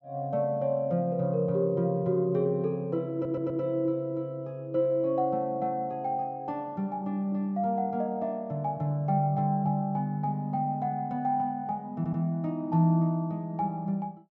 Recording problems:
treble missing; nothing above 8 kHz
audio stuttering; at 3 s and at 12 s

